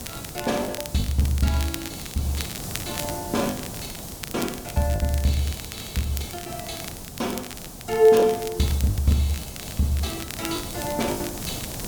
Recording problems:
background hiss; SNR 10 dB
crackling; vinyl, SNR 12 dB
lost packets; 11% of the sound replaced, filled with the last packet

